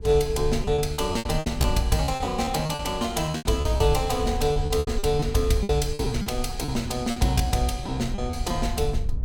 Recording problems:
wind on the microphone; below 76 Hz, SNR 8 dB
packet loss; 14% of the sound replaced, filled with repeated pitch periods

